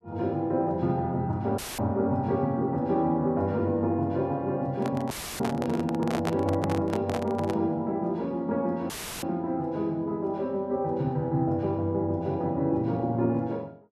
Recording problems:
audio cutting out; at 1.5 s, at 5 s and at 9 s; filled with static
microphone handling noise; from 5 to 7.5 s; peak +2 dB vs average level

